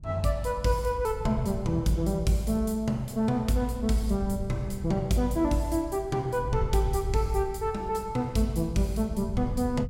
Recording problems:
wind on the microphone; below 100 Hz, SNR 11 dB

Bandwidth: 16 kHz